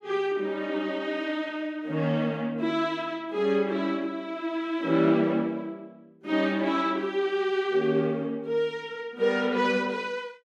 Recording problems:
none

